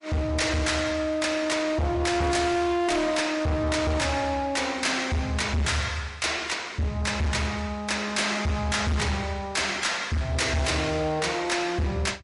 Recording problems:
codec artefacts; MP3, log-spectral distance 3 dB, nothing above 11 kHz
distortion; hard clipping, signal-to-distortion ratio 7 dB

